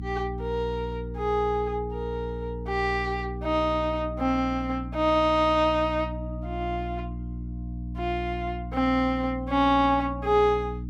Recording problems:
electrical hum; 60 Hz, harmonics up to 300 Hz, SNR 9 dB

